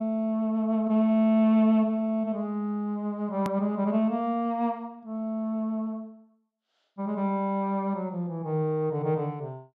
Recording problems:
edit click; at 3.5 s

